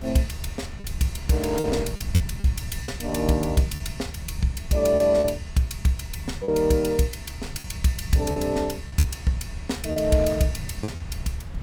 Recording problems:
rumble; below 110 Hz, SNR 10 dB
wind on the microphone; below 640 Hz, SNR 18 dB
packet loss; 6% of the sound replaced, filled with repeated pitch periods

